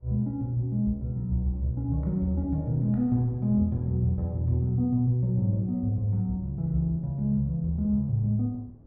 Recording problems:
wind on the microphone; below 250 Hz, SNR 25 dB

